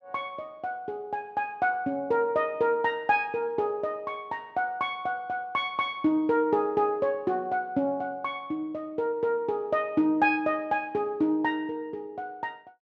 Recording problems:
none

